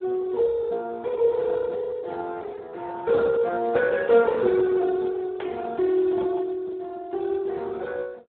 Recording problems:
telephone audio; 260 Hz to 2.1 kHz, Speex

